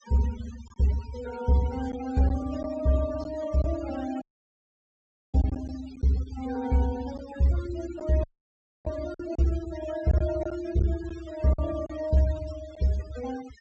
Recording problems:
low-pass filter; nothing above 8 kHz
noise reduction artefacts; signal-to-artefact ratio 15 dB
packet loss; 4% of the sound replaced, filled with silence
dropout; at 4 s for 1 s and at 8 s for 0.5 s

